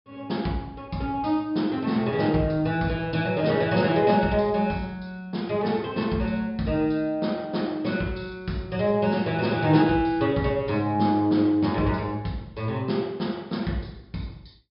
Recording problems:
treble cut off; nothing above 5.5 kHz

